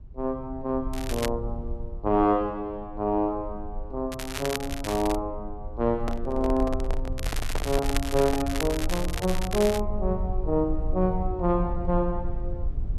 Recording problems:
low-frequency rumble; below 60 Hz, SNR 7 dB
crackle; at 1 s, from 4 to 5 s and from 7 to 10 s; loose cable, SNR 8 dB
handling noise; from 6 to 8.5 s; peak -1 dB vs average level

